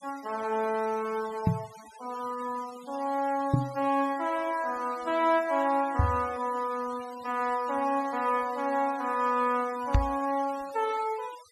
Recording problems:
denoising artefacts; signal-to-artefact ratio 20 dB
microphone thump; 4 times, first at 1.5 s; peak +9 dB vs average level

